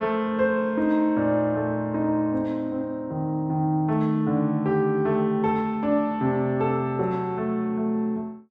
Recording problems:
none

